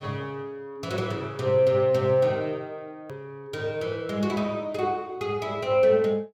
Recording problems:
edit click; at 3 s

